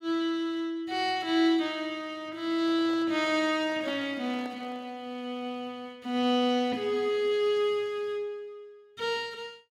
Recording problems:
microphone handling noise; from 2.5 to 5 s; peak -11 dB vs average level

